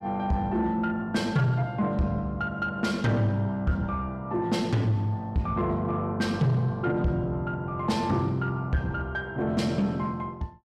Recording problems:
distorted audio; soft clipping, signal-to-distortion ratio 12 dB

